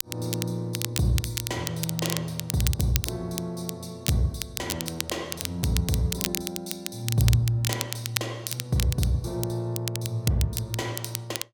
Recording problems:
crackle; vinyl, SNR 4 dB

